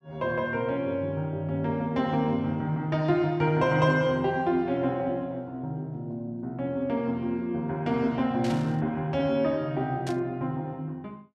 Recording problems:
static burst; at 8.5 s and at 10 s; peak -8 dB vs average level

